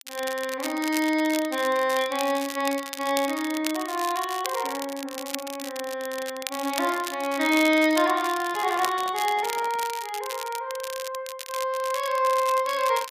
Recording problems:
crackling; vinyl, SNR 10 dB
handling noise; from 8.5 to 10 s; peak -10 dB vs average level

